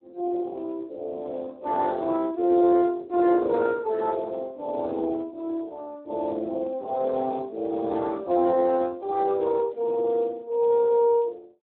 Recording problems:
telephone audio; 260 Hz to 2.1 kHz, Speex

